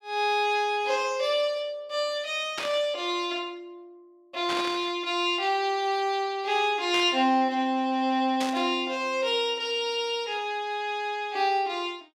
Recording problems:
static burst; 4 times, first at 2.5 s; peak -3 dB vs average level

